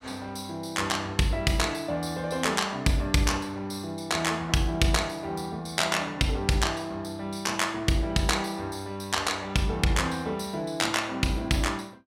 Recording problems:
none

